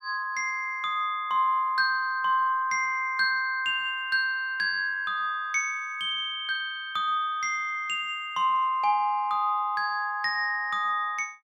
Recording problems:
none

